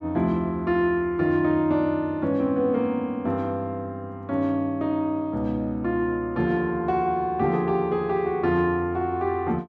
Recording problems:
none

